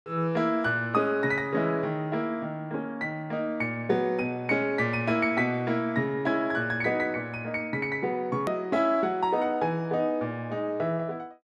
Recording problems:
edit click; at 8.5 s

